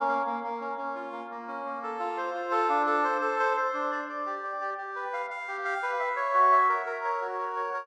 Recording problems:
none

